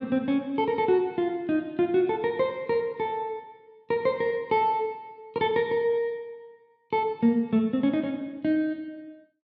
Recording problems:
none

